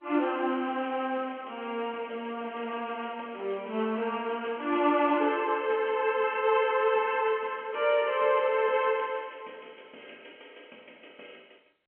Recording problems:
phone line; 240 Hz to 3.2 kHz, G.711

